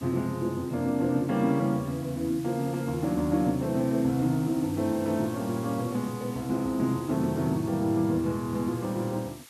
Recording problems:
hiss; SNR 20 dB

